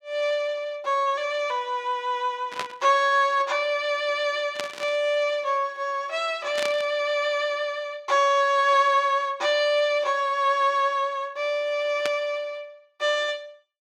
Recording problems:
burst of static; 4 times, first at 2.5 s; peak -2 dB vs average level

